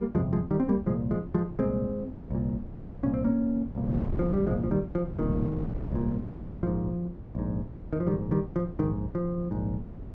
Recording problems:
wind on the microphone; below 240 Hz, SNR 9 dB

